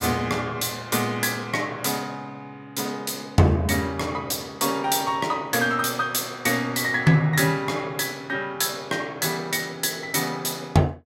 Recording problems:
none

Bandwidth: 16 kHz